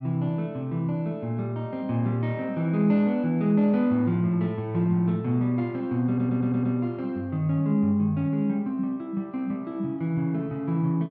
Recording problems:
stutter; at 6 s

